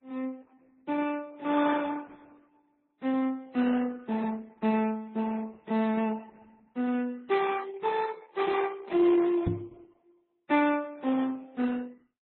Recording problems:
codec artefacts; Opus, then MP3, log-spectral distance 3 dB, nothing above 3.7 kHz
microphone bump; at 9.5 s; peak +3 dB vs average level

